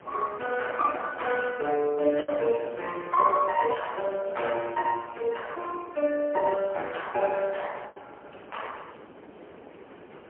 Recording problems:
phone line; 300 Hz to 3.2 kHz, AMR-NB, then MP3
background hiss; SNR 29 dB
wind noise; below 670 Hz, SNR 20 dB
lost packets; 2% of the sound replaced, filled with the last packet
crackle; from 2 to 4.5 s; loose cable, SNR 28 dB

